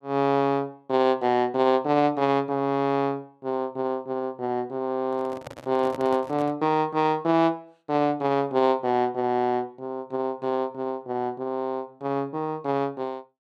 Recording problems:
handling noise; from 5 to 6.5 s; peak -7 dB vs average level

